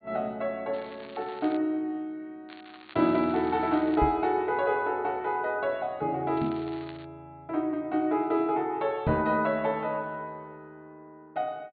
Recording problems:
treble cut off; nothing above 4.5 kHz
crackling; at 0.5 s, from 2.5 to 4 s and at 6.5 s; loose cable, SNR 22 dB
knock on the microphone; at 4 s, at 6.5 s and at 9 s; peak +2 dB vs average level

